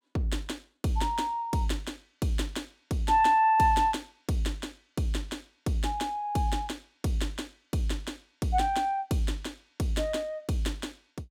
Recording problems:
none

